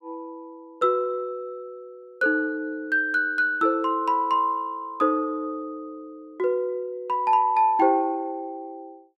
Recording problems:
none

